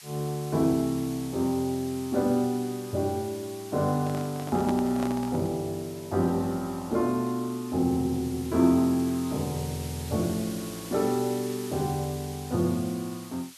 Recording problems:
hiss; slope +4 dB per octave, SNR 16 dB
handling noise; from 4 to 5.5 s; peak -2 dB vs average level

